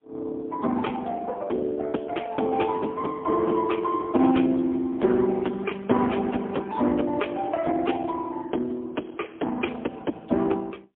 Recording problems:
telephone audio; 170 Hz to 3.4 kHz, AMR-NB, then MP3

